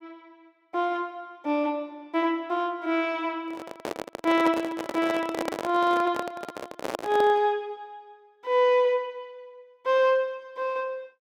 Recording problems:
handling noise; from 3.5 to 7.5 s; peak 0 dB vs average level

